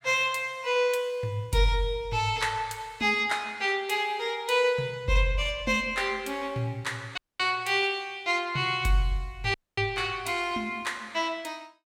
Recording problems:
dropout; at 7 s and at 9.5 s

